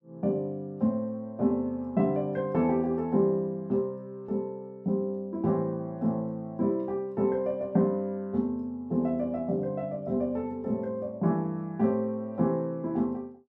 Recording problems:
none

